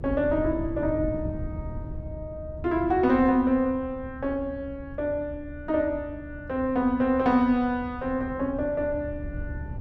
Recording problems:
low-frequency rumble; below 130 Hz, SNR 12 dB

